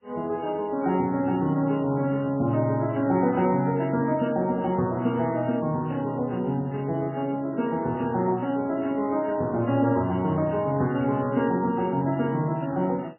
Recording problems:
lossy compression; MP3, then MP3, log-spectral distance 2 dB, nothing above 2.7 kHz

